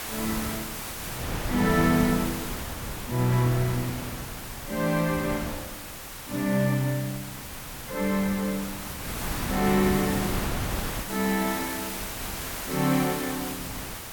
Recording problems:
hiss; slope -1 dB per octave, SNR 8 dB
wind noise; below 950 Hz, SNR 9 dB

